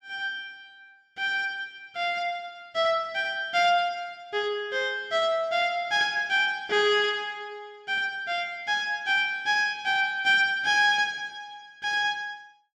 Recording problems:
none

